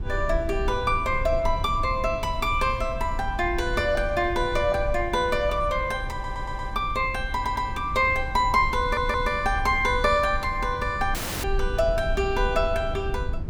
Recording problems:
rumble; below 76 Hz, SNR 9 dB
audio stuttering; at 6 s, at 7.5 s and at 9 s
audio cutting out; at 11 s

